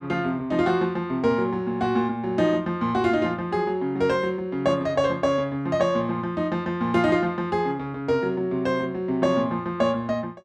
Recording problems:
none

